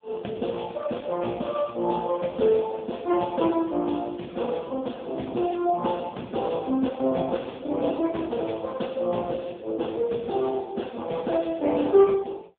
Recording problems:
telephone audio; 150 Hz to 3.5 kHz, AMR-NB

